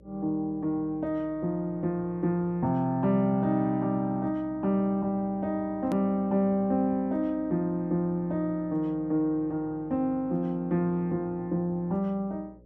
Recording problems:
electrical hum; 60 Hz, harmonics up to 600 Hz, SNR 26 dB
edit click; at 6 s

